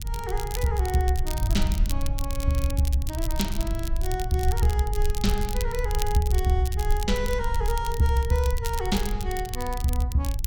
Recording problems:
low-frequency rumble; below 56 Hz, SNR 6 dB
wind on the microphone; below 74 Hz, SNR 5 dB
crackling; vinyl, SNR 11 dB

